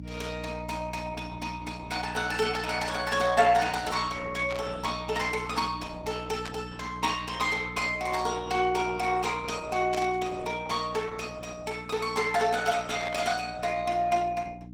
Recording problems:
lossy codec; Opus, log-spectral distance 5 dB, nothing above 19 kHz
mains hum; 60 Hz, harmonics up to 300 Hz, SNR 12 dB
burst of static; 5 times, first at 2 s; peak -5 dB vs average level

